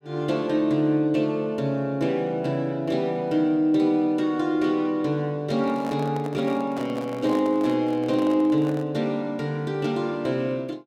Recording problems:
microphone handling noise; from 5.5 to 9 s; peak -7 dB vs average level

